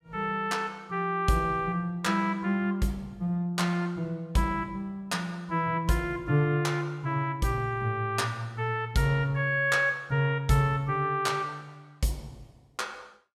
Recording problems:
none

